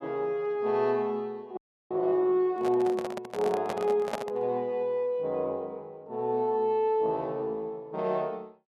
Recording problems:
audio freezing; at 1.5 s
microphone handling noise; from 2.5 to 4.5 s; peak +1 dB vs average level

